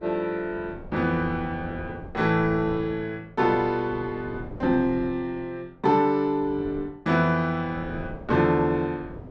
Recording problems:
wind on the microphone; below 380 Hz, SNR 16 dB

